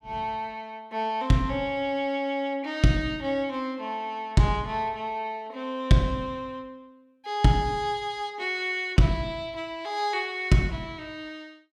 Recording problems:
none

